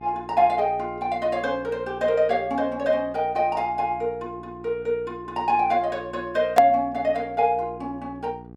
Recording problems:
hum; 60 Hz, harmonics up to 1.1 kHz, SNR 20 dB
click at an edit; at 6.5 s

